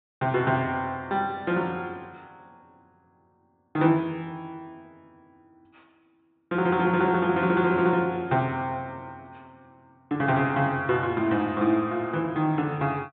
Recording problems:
treble cut off; nothing above 4 kHz

